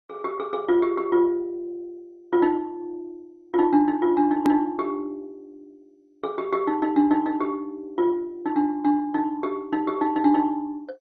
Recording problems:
lossy compression; MP2, log-spectral distance 2 dB, nothing above 14.6 kHz
click at an edit; at 4.5 s

